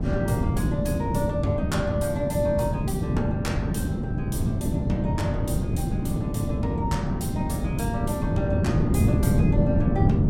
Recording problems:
electrical hum; 60 Hz, harmonics up to 600 Hz, SNR 18 dB
wind on the microphone; below 240 Hz, SNR -6 dB

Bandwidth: 16.5 kHz